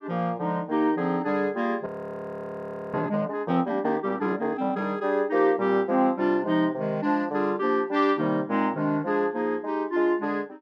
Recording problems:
frozen audio; at 2 s for 1 s

